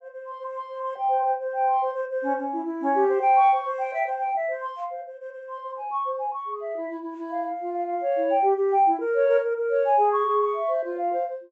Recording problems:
low-pass filter; nothing above 8 kHz

